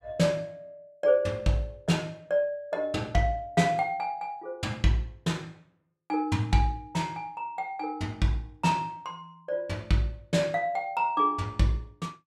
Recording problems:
none

